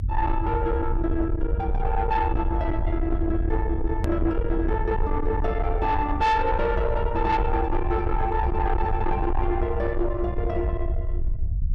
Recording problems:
distortion; soft clipping, signal-to-distortion ratio 10 dB
rumble; below 80 Hz, SNR 3 dB
hard cut with a click; at 4 s

